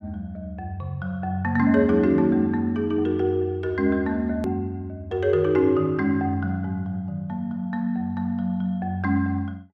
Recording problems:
hard cut with a click; at 4.5 s

